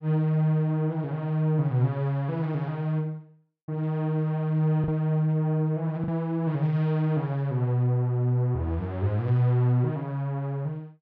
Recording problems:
packet loss; 0.8% of the sound replaced, filled with the last packet

